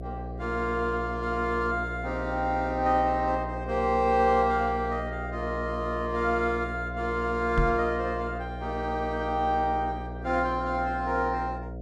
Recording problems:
hum; 60 Hz, harmonics up to 720 Hz, SNR 9 dB
microphone thump; at 7.5 s; peak +3 dB vs average level

